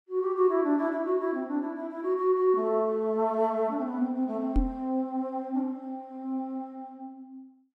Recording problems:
knock on the microphone; at 4.5 s; peak +5 dB vs average level

